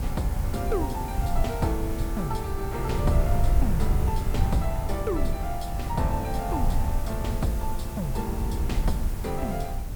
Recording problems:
hiss; slope -4 dB per octave, SNR 11 dB
rumble; below 90 Hz, SNR -1 dB
wind noise; below 170 Hz, SNR 18 dB

